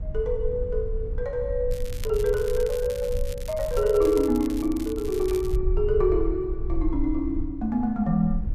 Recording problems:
low-frequency rumble; below 56 Hz, SNR 8 dB
crackling; from 1.5 to 5.5 s; loose cable, SNR 18 dB

